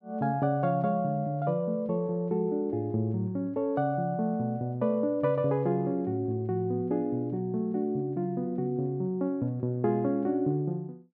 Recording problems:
none

